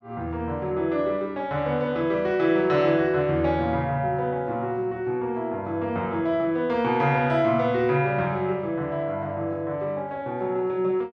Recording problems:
none

